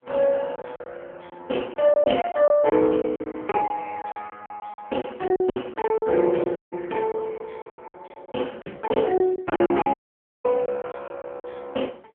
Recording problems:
phone line; 240 Hz to 3.2 kHz, AMR-NB
lost packets; 14% of the sound replaced, filled with silence
audio cutting out; at 6.5 s and at 10 s for 0.5 s

